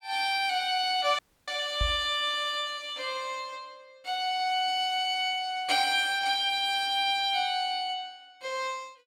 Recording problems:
dropout; at 1 s
knock on the microphone; at 2 s; peak 0 dB vs average level

